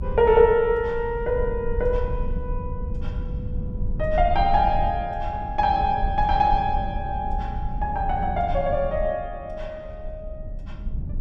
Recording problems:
rumble; below 78 Hz, SNR 8 dB

